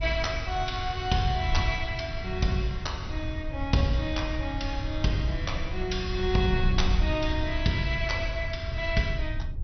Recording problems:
codec artefacts; MP2, log-spectral distance 2 dB, nothing above 6 kHz
wind noise; below 88 Hz, SNR 4 dB

